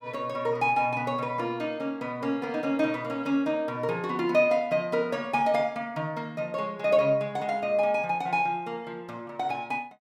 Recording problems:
none

